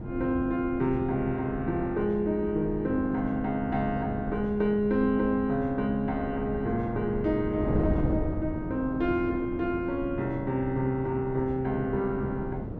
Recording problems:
wind noise; below 310 Hz, SNR 8 dB

